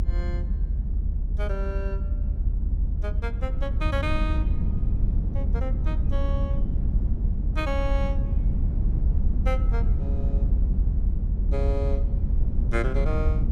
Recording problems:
low-frequency rumble; below 74 Hz, SNR -8 dB

